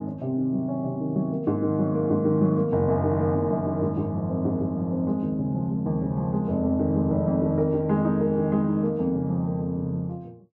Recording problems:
none

